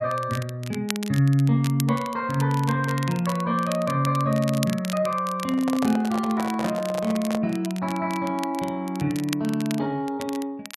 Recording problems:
crackling; vinyl, SNR 14 dB
microphone handling noise; from 5.5 to 7.5 s; peak -2 dB vs average level

